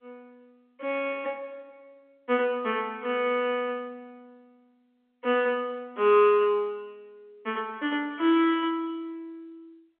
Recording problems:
phone line; 260 Hz to 3.4 kHz, G.711

